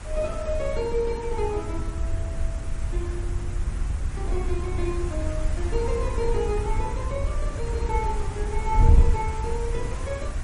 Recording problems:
codec artefacts; AAC, then MP3, log-spectral distance 2 dB
background hiss; SNR 11 dB
wind noise; below 72 Hz, SNR -2 dB

